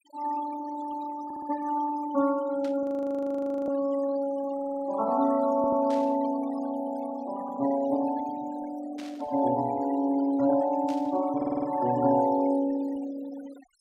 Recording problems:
denoising artefacts; signal-to-artefact ratio 17 dB
stutter; 4 times, first at 1 s
burst of static; 4 times, first at 2.5 s; peak -13 dB vs average level
audio freezing; at 3 s for 1 s

